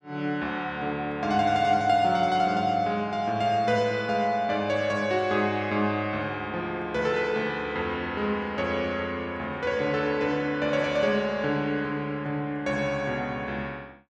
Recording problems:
none

